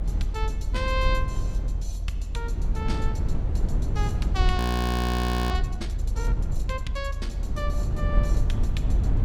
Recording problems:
low-frequency rumble; below 82 Hz, SNR -6 dB
frozen audio; at 4.5 s for 1 s

